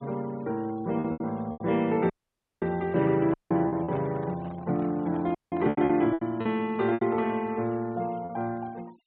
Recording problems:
treble missing; nothing above 4 kHz
noise reduction artefacts; signal-to-artefact ratio 25 dB
packet loss; 8% of the sound replaced, filled with repeated pitch periods
dropout; at 2 s for 0.5 s, at 3.5 s and at 5.5 s
handling noise; from 3.5 to 6 s; peak -11 dB vs average level

